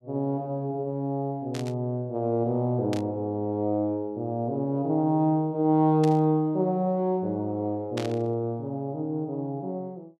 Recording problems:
burst of static; 4 times, first at 1.5 s; peak -6 dB vs average level

